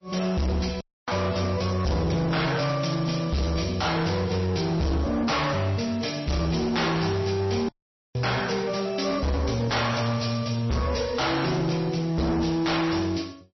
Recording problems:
codec artefacts; MP3, log-spectral distance 6 dB, nothing above 5.8 kHz
distorted audio; hard clipping, signal-to-distortion ratio 7 dB
audio cutting out; at 1 s and at 7.5 s

